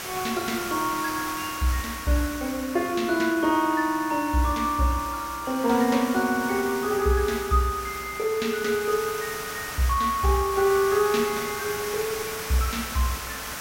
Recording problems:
hiss; SNR 9 dB

